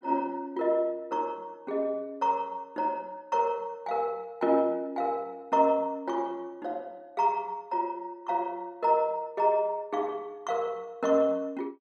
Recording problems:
none

